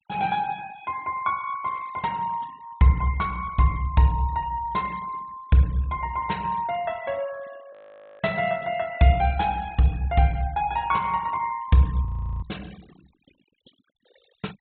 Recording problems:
low-pass filter; nothing above 4 kHz
noise reduction artefacts; signal-to-artefact ratio 24 dB
audio freezing; at 7.5 s and at 12 s

